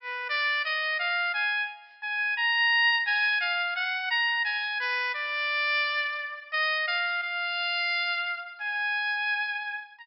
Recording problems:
treble cut off; nothing above 5.5 kHz

